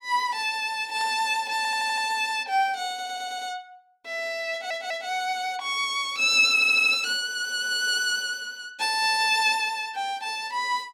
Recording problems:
burst of static; at 1 s; peak -15 dB vs average level
stutter; 4 times, first at 1.5 s

